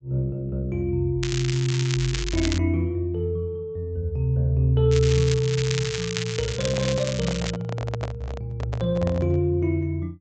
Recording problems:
treble cut off; nothing above 8 kHz
crackle; from 1 to 2.5 s and from 5 to 7.5 s; loose cable, SNR 8 dB
handling noise; from 6.5 to 9.5 s; peak -4 dB vs average level

